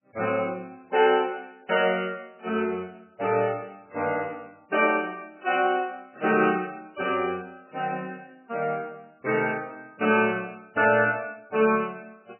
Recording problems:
codec artefacts; MP3, log-spectral distance 4 dB, nothing above 2.4 kHz

